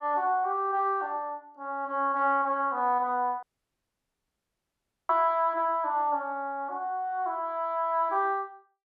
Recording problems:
dropout; at 3.5 s for 1.5 s

